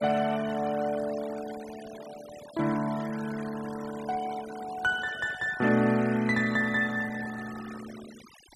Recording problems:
denoising artefacts; signal-to-artefact ratio 16 dB

